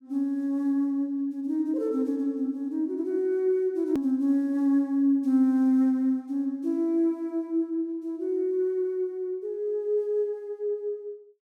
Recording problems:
click at an edit; at 4 s

